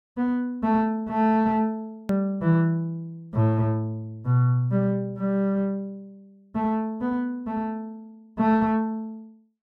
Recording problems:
edit click; at 2 s

